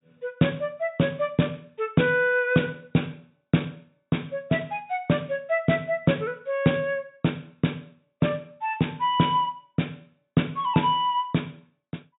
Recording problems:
treble missing; nothing above 4 kHz

